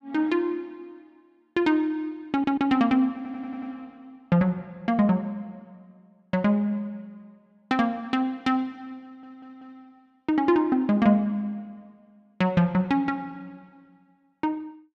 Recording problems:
stutter; at 2.5 s, at 3 s and at 9 s

